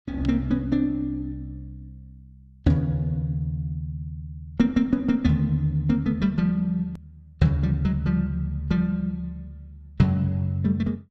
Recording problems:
edit click; at 7 s

